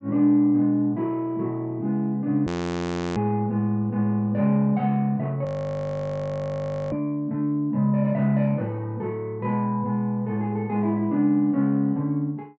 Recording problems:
treble missing; nothing above 8 kHz
audio freezing; at 2.5 s for 0.5 s and at 5.5 s for 1.5 s

